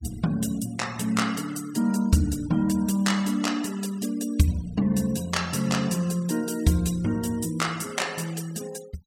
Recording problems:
noise reduction artefacts; signal-to-artefact ratio 18 dB

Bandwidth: 17 kHz